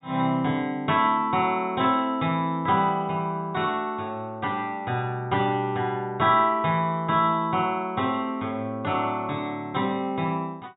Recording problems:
treble missing; nothing above 4 kHz

